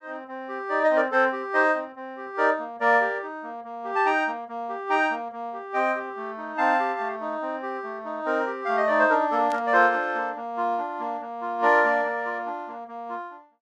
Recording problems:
static burst; at 9.5 s; peak -13 dB vs average level

